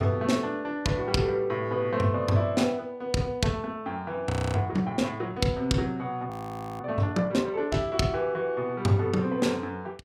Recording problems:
audio freezing; at 4.5 s and at 6.5 s for 0.5 s

